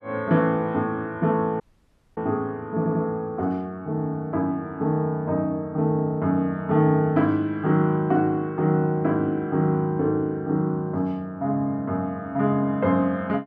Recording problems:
dropout; at 1.5 s for 0.5 s
audio stuttering; at 3 s

